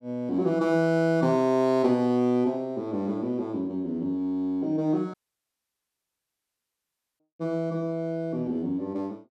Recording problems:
audio cutting out; at 5 s for 2 s

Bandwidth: 14 kHz